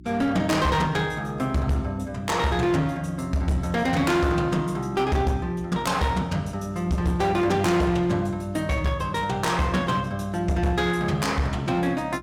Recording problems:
distortion; hard clipping, uneven, signal-to-distortion ratio 10 dB
hum; 60 Hz, harmonics up to 360 Hz, SNR 20 dB

